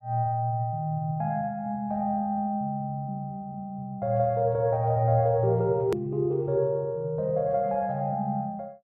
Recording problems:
click at an edit; at 6 s

